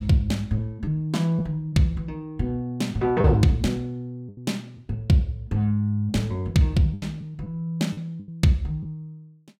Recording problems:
packet loss; 4% of the sound replaced, filled with the last packet

